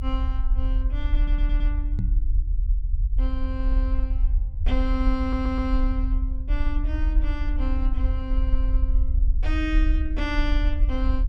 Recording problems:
rumble; below 52 Hz, strongest tone 38 Hz, SNR -7 dB
audio stuttering; at 1 s and at 5 s
knock on the microphone; at 2 s; peak +9 dB vs average level

